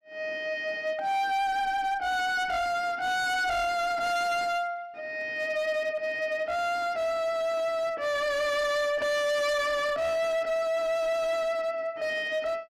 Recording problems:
distortion; hard clipping, signal-to-distortion ratio 7 dB

